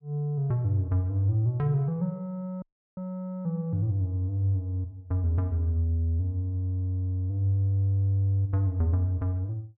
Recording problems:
dropout; at 2.5 s

